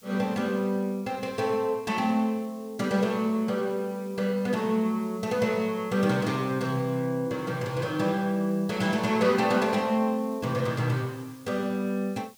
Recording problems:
background hiss; SNR 26 dB

